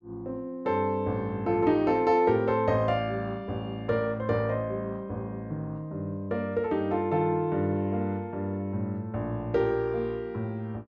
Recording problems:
none

